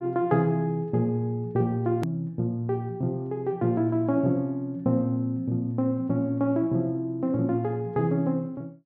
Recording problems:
click at an edit; at 2 s

